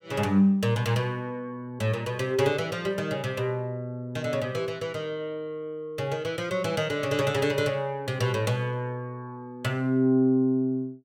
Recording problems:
none

